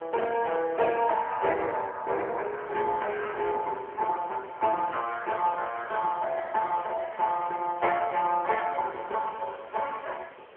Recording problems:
phone line; 370 Hz to 2.2 kHz, AMR-NB
wind noise; below 1.8 kHz, SNR 21 dB

